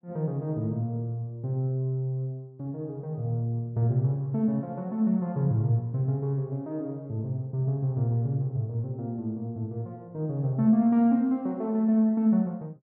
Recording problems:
none

